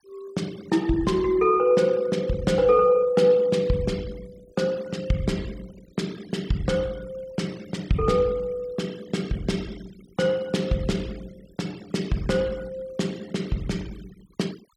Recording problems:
noise reduction artefacts; signal-to-artefact ratio 23 dB

